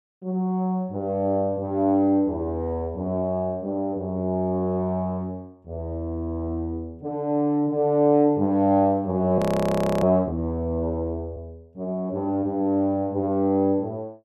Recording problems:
audio freezing; at 9.5 s for 0.5 s

